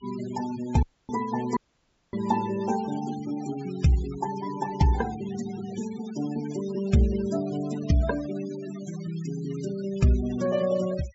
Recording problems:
treble cut off; nothing above 7.4 kHz
noise reduction artefacts; signal-to-artefact ratio 16 dB
audio cutting out; at 1 s and at 1.5 s for 0.5 s

